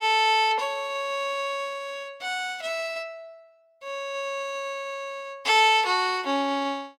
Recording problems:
none

